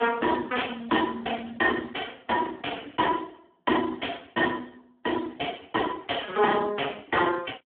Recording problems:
phone line; 240 Hz to 3.5 kHz, Speex
distorted audio; hard clipping, uneven, signal-to-distortion ratio 13 dB

